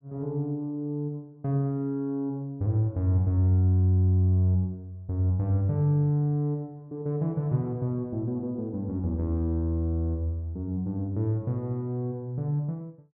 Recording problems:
none

